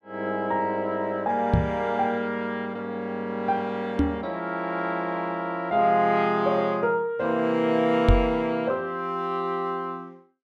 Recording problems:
microphone bump; at 1.5 s, at 4 s and at 8 s; peak +8 dB vs average level

